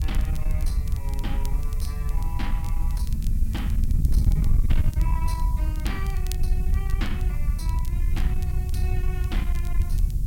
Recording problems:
distorted audio; soft clipping, signal-to-distortion ratio 11 dB
background hiss; SNR 12 dB
wind on the microphone; below 74 Hz, SNR -12 dB
crackle; vinyl, SNR 11 dB

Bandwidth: 16.5 kHz